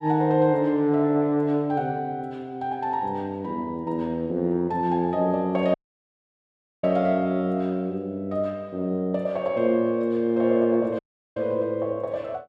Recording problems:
dropout; at 5.5 s for 1 s and at 11 s

